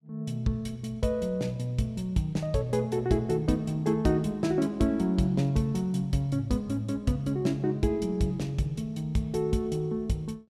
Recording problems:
none

